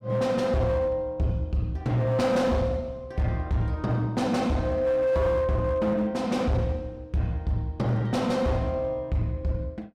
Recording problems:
distortion; hard clipping, signal-to-distortion ratio 11 dB

